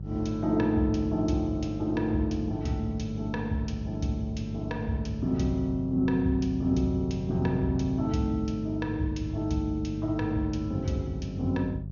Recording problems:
treble missing; nothing above 6.7 kHz
hum; 50 Hz, harmonics up to 400 Hz, SNR 8 dB

